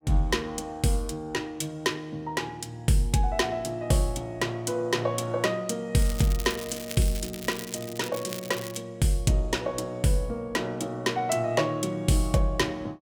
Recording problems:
crackling; from 6 to 9 s; loose cable, SNR 11 dB

